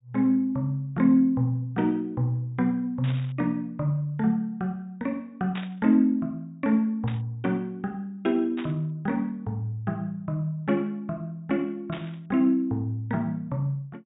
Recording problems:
treble missing; nothing above 4 kHz
burst of static; 5 times, first at 3 s; peak -7 dB vs average level

